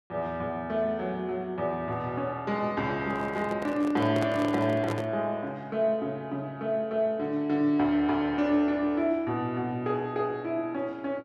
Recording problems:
microphone handling noise; from 3 to 5 s; peak -2 dB vs average level

